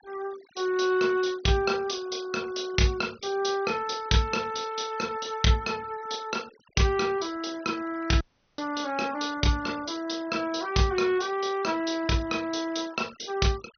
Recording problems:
treble cut off; nothing above 6.2 kHz
denoising artefacts; signal-to-artefact ratio 21 dB
audio cutting out; at 8 s

